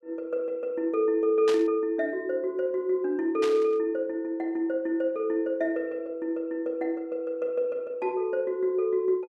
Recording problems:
burst of static; at 1.5 s and at 3.5 s; peak -3 dB vs average level

